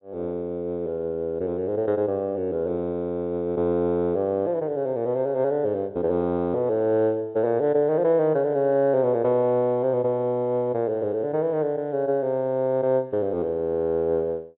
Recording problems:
treble missing; nothing above 3.9 kHz

